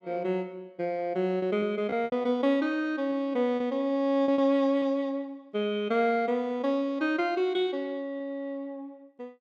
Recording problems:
lost packets; 4% of the sound replaced, filled with repeated pitch periods

